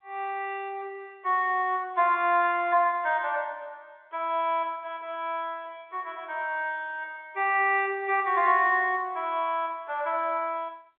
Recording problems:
telephone audio; 340 Hz to 3.5 kHz, G.711

